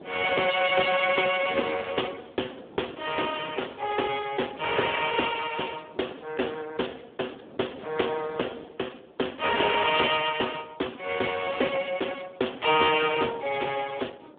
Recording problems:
phone line; 300 Hz to 3.6 kHz, Speex
wind on the microphone; below 590 Hz, SNR 22 dB

